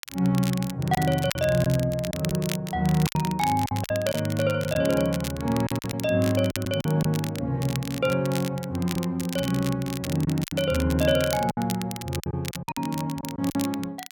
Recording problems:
crackle; vinyl, SNR 12 dB
lost packets; 8% of the sound replaced, filled with silence

